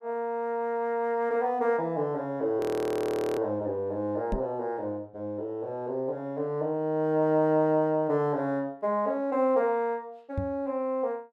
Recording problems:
audio freezing; at 2.5 s for 1 s
microphone thump; at 4.5 s and at 10 s; peak 0 dB vs average level

